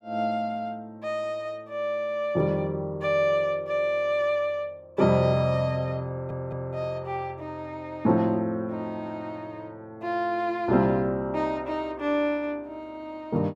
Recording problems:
audio stuttering; at 6 s

